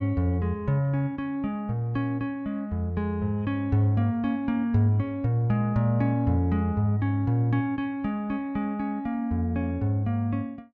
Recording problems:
none

